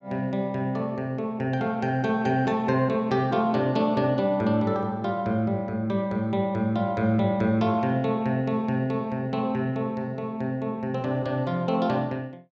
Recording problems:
none

